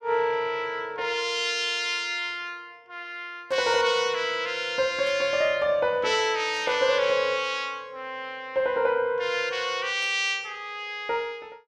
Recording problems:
burst of static; 4 times, first at 3.5 s; peak -14 dB vs average level

